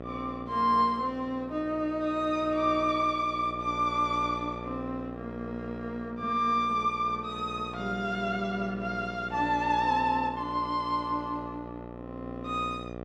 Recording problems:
hum; 60 Hz, harmonics up to 2 kHz, SNR 12 dB

